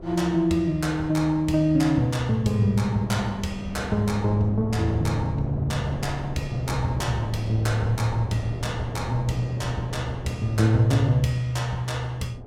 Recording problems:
wind noise; below 420 Hz, SNR 12 dB

